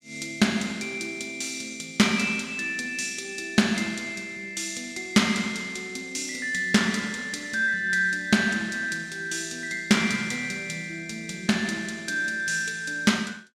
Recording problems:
none

